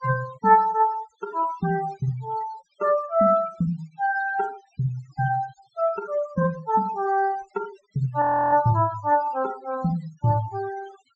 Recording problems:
low-pass filter; nothing above 8 kHz
noise reduction artefacts; signal-to-artefact ratio 20 dB
audio freezing; at 8 s

